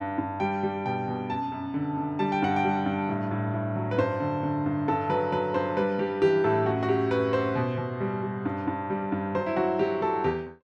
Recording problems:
none

